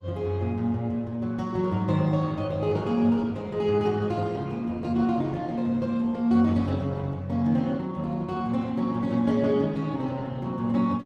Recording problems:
codec artefacts; Opus, log-spectral distance 2 dB

